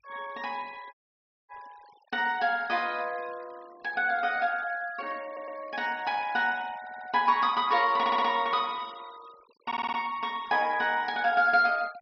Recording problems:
low-pass filter; nothing above 5.5 kHz
denoising artefacts; signal-to-artefact ratio 25 dB
dropout; at 1 s for 0.5 s
audio stuttering; 4 times, first at 5.5 s

